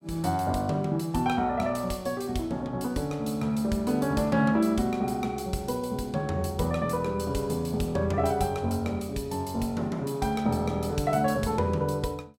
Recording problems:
none

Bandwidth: 16 kHz